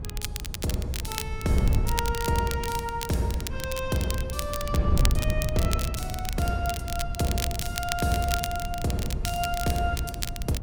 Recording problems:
wind noise; below 110 Hz, SNR 4 dB
crackling; vinyl, SNR 6 dB

